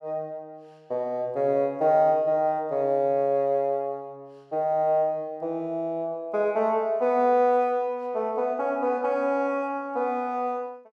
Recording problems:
none

